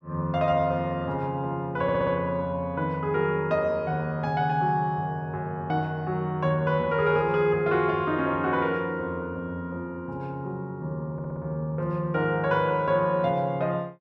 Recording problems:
stutter; at 2 s and at 11 s

